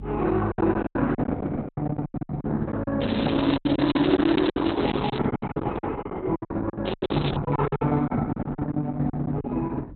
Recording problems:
lossy codec; Opus, log-spectral distance 6 dB, nothing above 4 kHz
electrical hum; 50 Hz, harmonics up to 300 Hz, SNR 17 dB
lost packets; 16% of the sound replaced, filled with silence
crackle; from 3 to 5 s and at 7 s; loose cable, SNR 10 dB
handling noise; from 4 to 6 s; peak -3 dB vs average level

